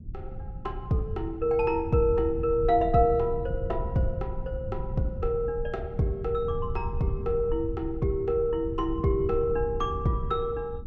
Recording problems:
rumble; below 94 Hz, SNR 9 dB

